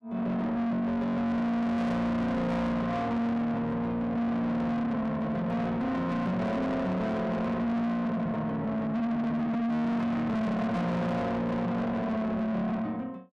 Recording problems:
distorted audio; soft clipping, signal-to-distortion ratio 7 dB

